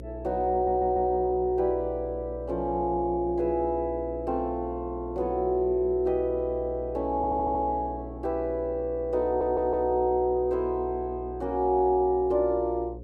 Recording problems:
hum; 60 Hz, harmonics up to 540 Hz, SNR 14 dB
audio stuttering; at 0.5 s, at 7 s and at 9.5 s

